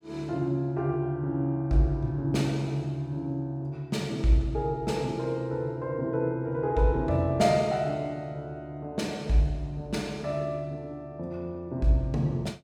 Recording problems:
none

